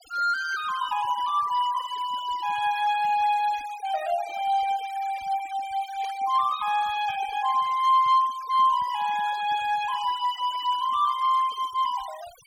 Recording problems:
noise reduction artefacts; signal-to-artefact ratio 19 dB
burst of static; at 6 s; peak -17 dB vs average level

